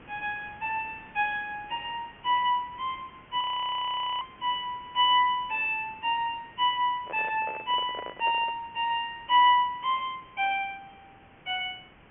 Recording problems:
treble missing; nothing above 3.1 kHz
background hiss; SNR 25 dB
audio freezing; at 3.5 s for 1 s
microphone handling noise; from 7 to 8.5 s; peak -8 dB vs average level

